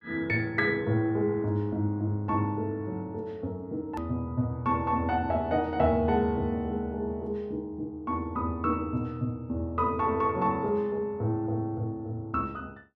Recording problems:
edit click; at 4 s

